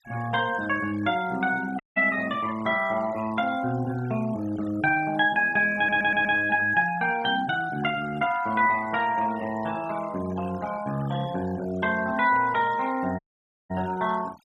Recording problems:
denoising artefacts; signal-to-artefact ratio 19 dB
dropout; at 2 s and at 13 s for 0.5 s
audio stuttering; at 6 s

